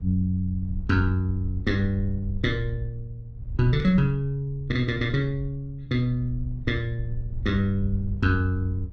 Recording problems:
wind on the microphone; below 68 Hz, SNR 10 dB

